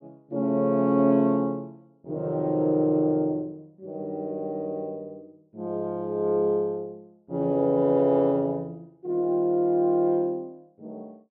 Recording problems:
none

